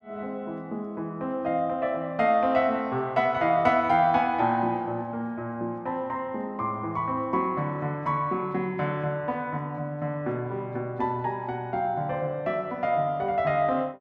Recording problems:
none

